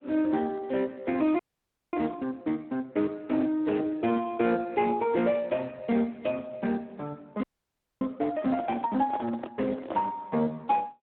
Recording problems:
telephone audio; 190 Hz to 3.5 kHz, Speex
frozen audio; at 1.5 s for 0.5 s and at 7.5 s for 0.5 s
handling noise; from 8.5 to 10 s; peak -1 dB vs average level

